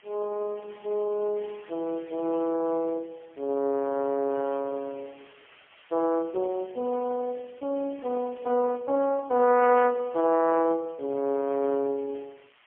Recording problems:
telephone audio; 300 Hz to 2.7 kHz, AMR-NB, then MP3
hiss; SNR 27 dB

